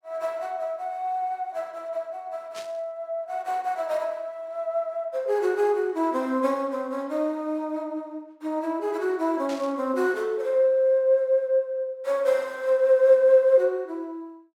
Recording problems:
static burst; at 2.5 s and at 9.5 s; peak -11 dB vs average level

